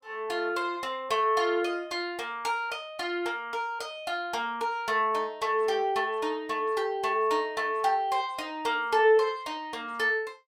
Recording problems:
none

